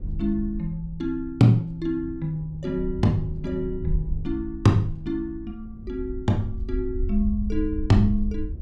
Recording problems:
low-frequency rumble; below 62 Hz, SNR 9 dB
wind on the microphone; below 120 Hz, SNR 18 dB

